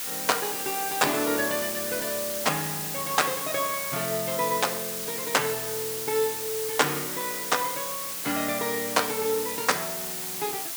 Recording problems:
hiss; slope +2 dB per octave, SNR 2 dB

